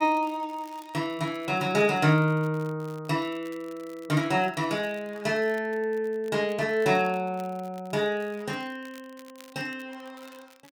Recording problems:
crackling; vinyl, SNR 27 dB

